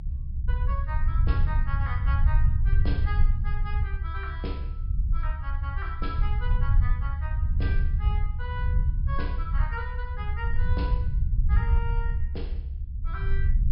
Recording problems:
treble cut off; nothing above 5.5 kHz
rumble; below 74 Hz, SNR -11 dB

